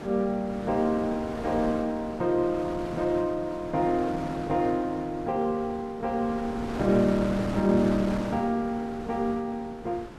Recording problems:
wind noise; below 920 Hz, SNR 10 dB

